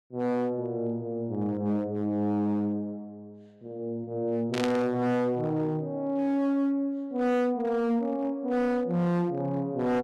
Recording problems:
distorted audio; hard clipping, signal-to-distortion ratio 10 dB
burst of static; at 4.5 s; peak -1 dB vs average level

